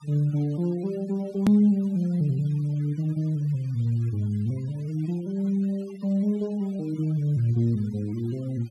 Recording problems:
noise reduction artefacts; signal-to-artefact ratio 27 dB
click at an edit; at 1.5 s

